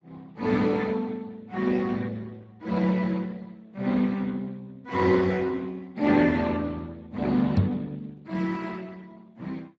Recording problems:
codec artefacts; Speex, log-spectral distance 3 dB
knock on the microphone; at 7.5 s; peak +7 dB vs average level

